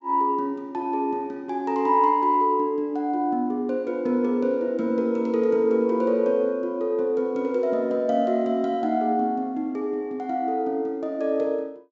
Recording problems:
treble missing; nothing above 8 kHz

